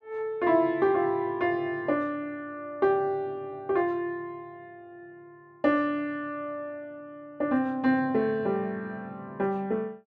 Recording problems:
none

